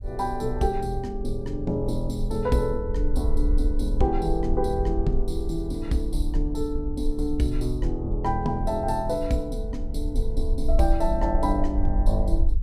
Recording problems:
low-frequency rumble; below 50 Hz, SNR 2 dB

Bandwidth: 15.5 kHz